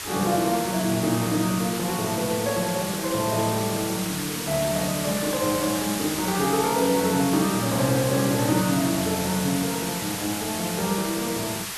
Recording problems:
background hiss; slope +1 dB per octave, SNR 5 dB

